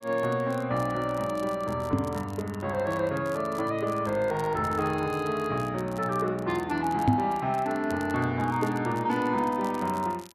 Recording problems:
crackling; vinyl, SNR 23 dB
microphone thump; at 2 s and at 7 s; peak +8 dB vs average level

